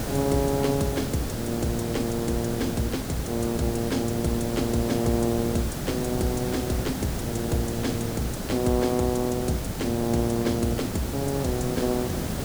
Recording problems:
background hiss; SNR 4 dB

